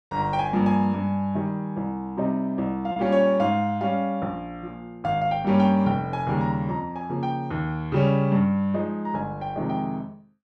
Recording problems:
packet loss; 0.4% of the sound replaced, filled with repeated pitch periods

